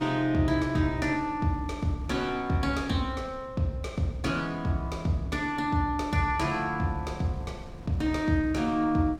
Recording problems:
wind noise; below 200 Hz, SNR 19 dB

